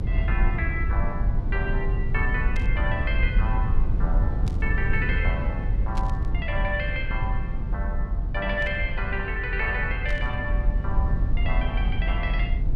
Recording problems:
low-frequency rumble; below 76 Hz, SNR -3 dB
burst of static; 5 times, first at 2.5 s; peak -6 dB vs average level

